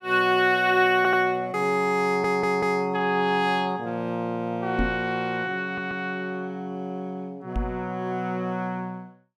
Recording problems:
audio stuttering; at 1 s, at 2 s and at 5.5 s
microphone bump; at 5 s and at 7.5 s; peak 0 dB vs average level

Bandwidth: 16.5 kHz